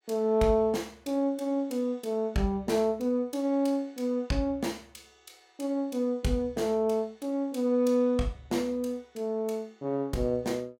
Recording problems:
none

